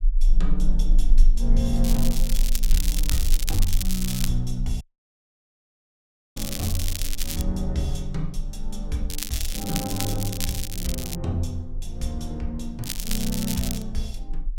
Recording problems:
rumble; below 32 Hz, strongest tone 22 Hz, SNR 0 dB
crackling; 4 times, first at 2 s; loose cable, SNR 1 dB
dropout; at 5 s for 1.5 s

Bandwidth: 16.5 kHz